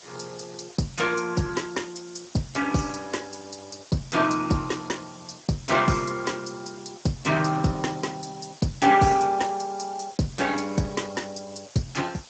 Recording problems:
lossy codec; Speex, log-spectral distance 13 dB, nothing above 7.8 kHz
hiss; SNR 21 dB

